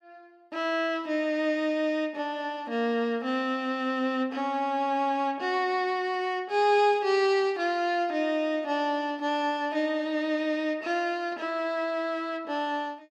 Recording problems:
none

